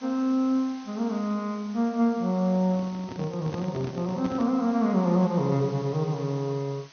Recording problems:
lossy codec; MP2, log-spectral distance 5 dB
hiss; slope 0 dB per octave, SNR 23 dB
microphone handling noise; from 2.5 to 4.5 s; peak -5 dB vs average level

